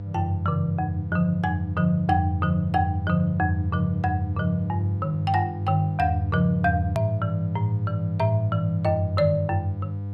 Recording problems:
hum; 50 Hz, harmonics up to 700 Hz, SNR 7 dB
click at an edit; at 7 s

